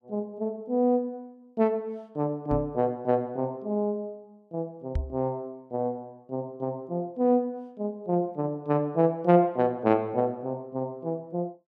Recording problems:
microphone bump; at 2.5 s and at 5 s; peak +2 dB vs average level

